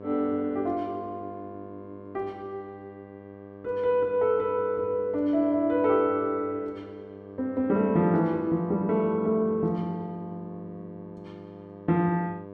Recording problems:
hum; 50 Hz, harmonics up to 1.2 kHz, SNR 17 dB

